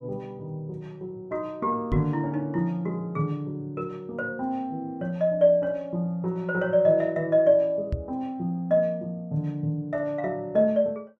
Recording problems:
microphone bump; at 2 s and at 8 s; peak +2 dB vs average level

